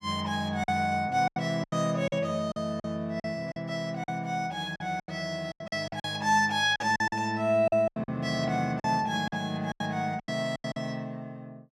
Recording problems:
packet loss; 12% of the sound replaced, filled with silence

